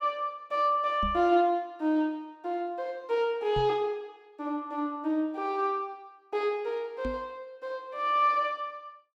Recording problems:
knock on the microphone; at 1 s, at 3.5 s and at 7 s; peak -3 dB vs average level

